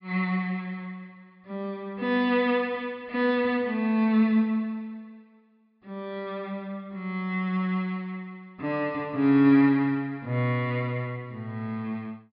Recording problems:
treble cut off; nothing above 5.5 kHz

